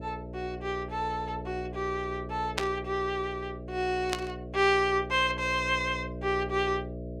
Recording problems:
hum; 60 Hz, harmonics up to 660 Hz, SNR 10 dB
burst of static; at 2.5 s and at 4 s; peak +4 dB vs average level

